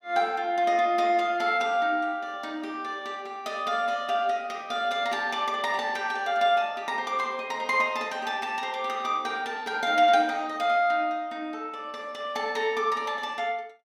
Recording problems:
none

